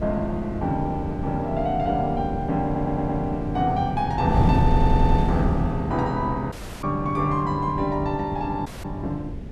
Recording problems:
wind noise; below 200 Hz, SNR 4 dB
audio stuttering; at 2.5 s and at 4.5 s
audio cutting out; at 6.5 s and at 8.5 s

